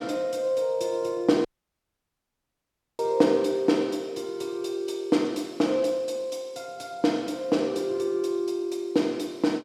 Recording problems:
audio cutting out; at 1.5 s for 1.5 s

